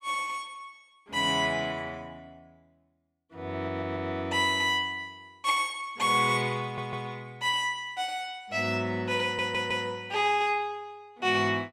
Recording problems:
stutter; at 3.5 s, at 6.5 s and at 9 s

